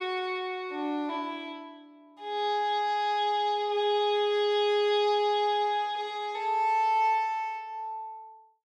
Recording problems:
none

